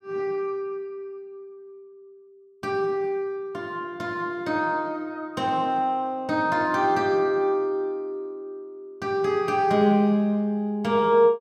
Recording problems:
none

